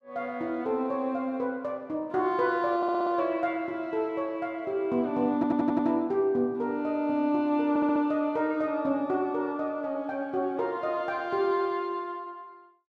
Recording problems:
stutter; at 3 s, at 5.5 s and at 7.5 s

